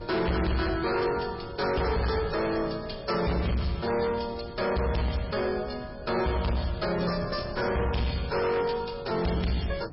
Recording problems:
codec artefacts; MP3, log-spectral distance 6 dB, nothing above 5.2 kHz
distortion; hard clipping, signal-to-distortion ratio 7 dB
wind noise; below 290 Hz, SNR 15 dB

